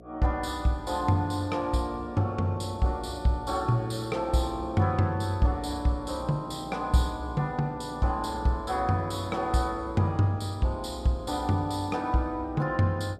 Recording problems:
electrical hum; 60 Hz, harmonics up to 720 Hz, SNR 18 dB

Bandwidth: 14 kHz